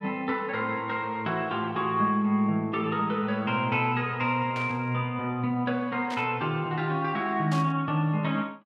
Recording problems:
burst of static; at 4.5 s, at 6 s and at 7.5 s; peak -7 dB vs average level

